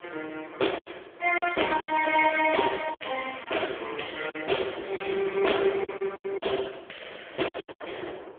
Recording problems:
telephone audio; 300 Hz to 3.4 kHz, AMR-NB
wind noise; below 780 Hz, SNR 14 dB
packet loss; 9% of the sound replaced, filled with silence

